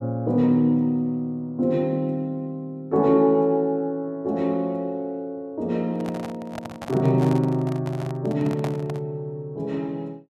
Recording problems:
microphone handling noise; from 6 to 9 s; peak -3 dB vs average level

